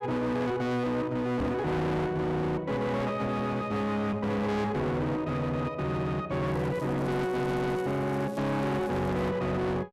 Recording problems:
distortion; hard clipping, signal-to-distortion ratio 6 dB
knock on the microphone; at 1.5 s; peak +4 dB vs average level
crackling; from 6.5 to 9.5 s; loose cable, SNR 25 dB

